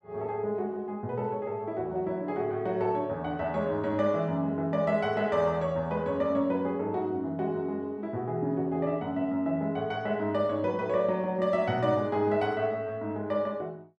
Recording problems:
none

